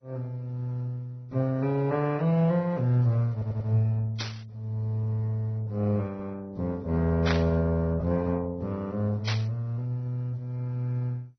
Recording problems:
codec artefacts; Vorbis, then MP2, log-spectral distance 2 dB, nothing above 6 kHz
stutter; at 3.5 s
burst of static; at 4 s, at 7.5 s and at 9.5 s; peak +2 dB vs average level

